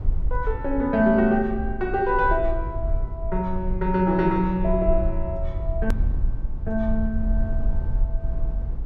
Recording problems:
rumble; below 56 Hz, SNR 5 dB
click at an edit; at 6 s

